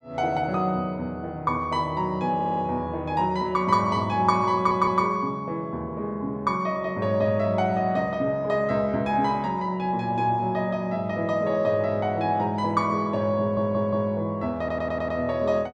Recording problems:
stutter; 4 times, first at 2.5 s

